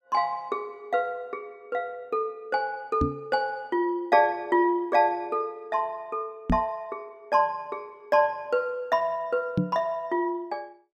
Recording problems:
microphone thump; at 3 s, at 6.5 s and at 9.5 s; peak +6 dB vs average level

